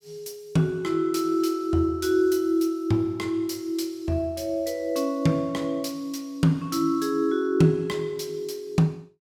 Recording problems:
none

